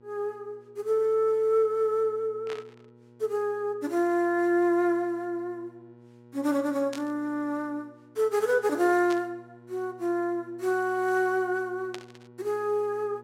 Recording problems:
hum; 60 Hz, harmonics up to 1.4 kHz, SNR 26 dB
static burst; 4 times, first at 2.5 s; peak -8 dB vs average level

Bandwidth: 16 kHz